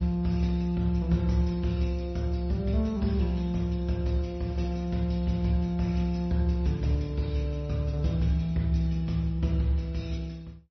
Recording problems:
lossy codec; MP3, log-spectral distance 2 dB, nothing above 5.8 kHz

